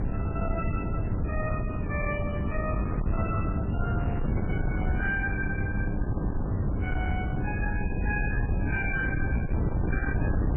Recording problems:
lossy codec; MP3, log-spectral distance 3 dB, nothing above 2.5 kHz
distortion; soft clipping, signal-to-distortion ratio 11 dB
electrical hum; 50 Hz, harmonics up to 900 Hz, SNR 4 dB
wind on the microphone; below 180 Hz, SNR -4 dB

